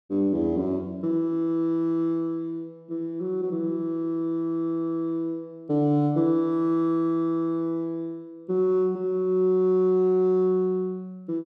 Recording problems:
none

